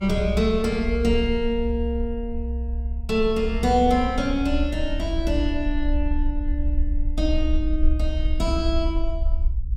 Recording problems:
low-frequency rumble; below 64 Hz, SNR 3 dB

